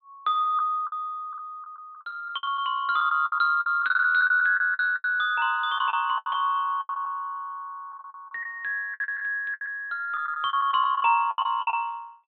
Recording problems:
low-pass filter; nothing above 4 kHz
lost packets; 14% of the sound replaced, filled with the last packet

